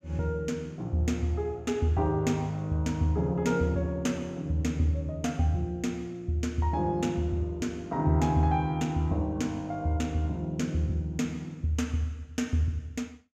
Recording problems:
none

